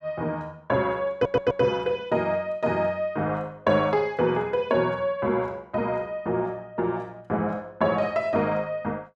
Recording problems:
stutter; at 1 s

